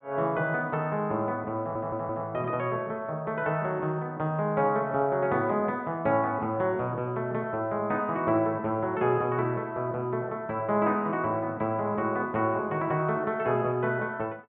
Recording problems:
treble missing; nothing above 4 kHz
audio stuttering; at 1.5 s

